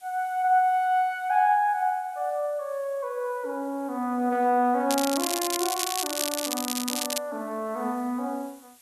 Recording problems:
hiss; slope +1 dB per octave, SNR 27 dB
crackling; from 5 to 7 s; loose cable, SNR 2 dB

